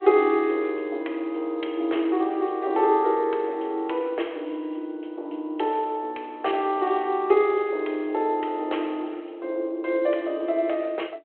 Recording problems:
phone line; 280 Hz to 3.3 kHz, G.726

